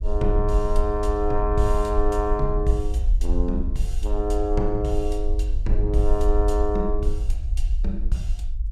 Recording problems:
rumble; below 50 Hz, SNR 0 dB

